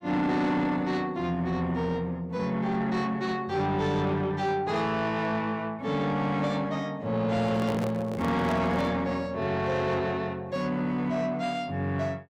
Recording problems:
distortion; soft clipping, signal-to-distortion ratio 11 dB
handling noise; from 7.5 to 9 s; peak -2 dB vs average level

